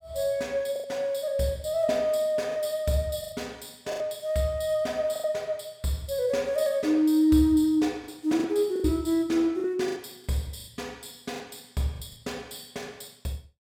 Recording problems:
packet loss; 7% of the sound replaced, filled with the last packet

